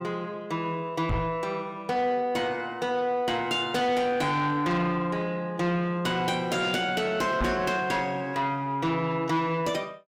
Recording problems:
distorted audio; soft clipping, signal-to-distortion ratio 11 dB
microphone thump; at 1 s and at 7.5 s; peak +3 dB vs average level

